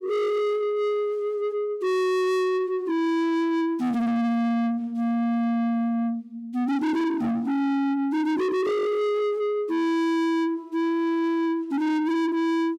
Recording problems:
distortion; soft clipping, signal-to-distortion ratio 6 dB

